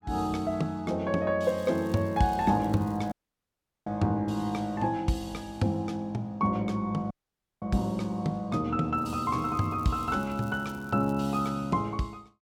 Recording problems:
crackling; from 1.5 to 3 s and from 9 to 11 s; loose cable, SNR 27 dB
dropout; at 3 s for 0.5 s and at 7 s for 0.5 s

